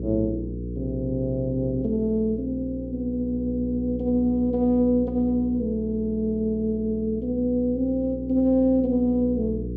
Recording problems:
mains hum; 60 Hz, harmonics up to 480 Hz, SNR 10 dB

